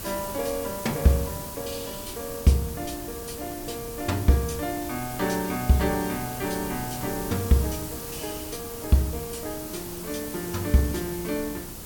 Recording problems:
background hiss; SNR 8 dB
wind on the microphone; below 180 Hz, SNR 19 dB

